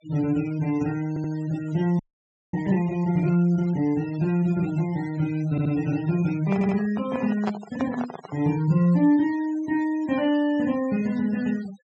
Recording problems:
treble missing; nothing above 8 kHz
denoising artefacts; signal-to-artefact ratio 22 dB
audio stuttering; at 1 s, at 5.5 s and at 6.5 s
frozen audio; at 2 s for 0.5 s
microphone handling noise; from 6.5 to 8.5 s; peak -1 dB vs average level

